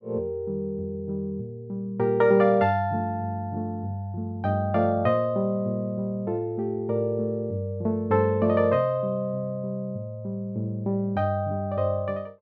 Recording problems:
none

